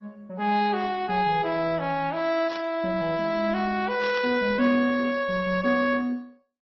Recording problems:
codec artefacts; MP3, then Opus, log-spectral distance 3 dB, nothing above 5.5 kHz
static burst; at 2.5 s and at 4 s; peak -9 dB vs average level

